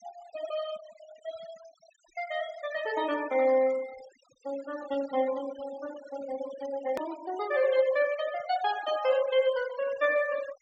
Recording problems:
low-pass filter; nothing above 8 kHz
noise reduction artefacts; signal-to-artefact ratio 17 dB
hard cut with a click; at 7 s

